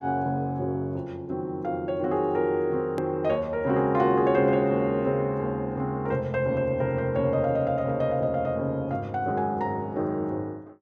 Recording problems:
edit click; at 3 s

